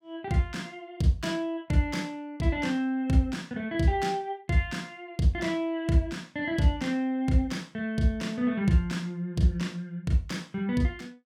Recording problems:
none

